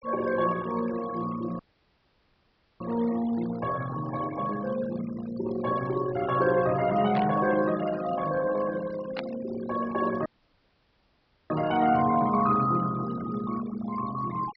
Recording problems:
treble cut off; nothing above 5.5 kHz
denoising artefacts; signal-to-artefact ratio 15 dB
audio cutting out; at 1.5 s for 1 s and at 10 s for 1 s
burst of static; at 7 s and at 9 s; peak -4 dB vs average level

